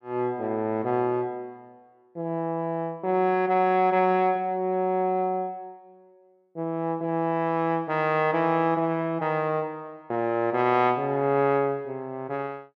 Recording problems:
none

